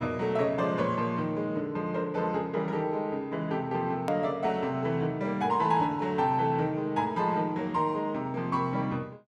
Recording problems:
hard cut with a click; at 4 s

